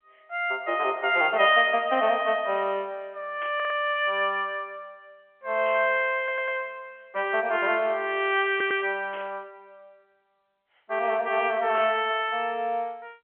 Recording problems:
phone line; 300 Hz to 3.5 kHz, G.711
burst of static; 4 times, first at 3.5 s; peak -10 dB vs average level
audio stuttering; at 3.5 s, at 6 s and at 8.5 s

